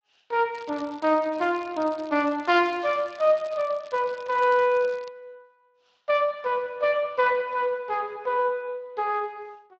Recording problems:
lossy compression; Speex, log-spectral distance 4 dB
crackle; from 0.5 to 5 s; loose cable, SNR 24 dB

